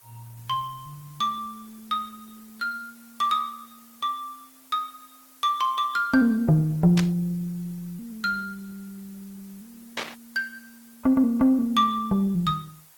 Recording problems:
lossy compression; Opus, log-spectral distance 5 dB, nothing above 17.7 kHz
hiss; SNR 26 dB
burst of static; at 7 s and at 10 s; peak -1 dB vs average level

